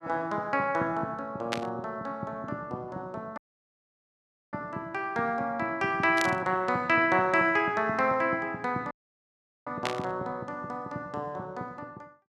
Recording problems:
burst of static; at 1.5 s, at 6 s and at 10 s; peak +2 dB vs average level
dropout; at 3.5 s for 1 s and at 9 s for 1 s

